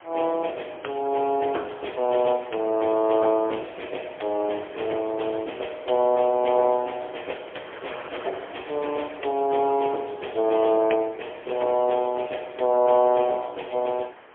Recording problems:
phone line; 280 Hz to 3.3 kHz, AMR-NB, then MP3
wind noise; below 1.9 kHz, SNR 23 dB

